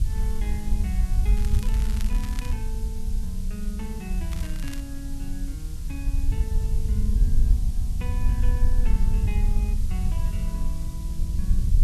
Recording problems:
hiss; slope +4 dB per octave, SNR 9 dB
wind noise; below 60 Hz, SNR -11 dB
crackling; from 1.5 to 2.5 s and at 4.5 s; loose cable, SNR 6 dB

